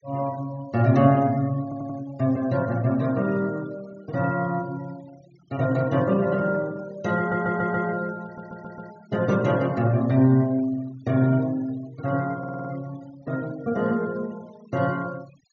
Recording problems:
treble cut off; nothing above 6.9 kHz
noise reduction artefacts; signal-to-artefact ratio 23 dB
stutter; 4 times, first at 1.5 s

